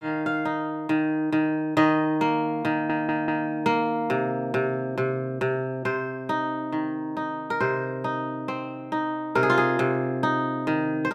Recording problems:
stutter; at 2.5 s

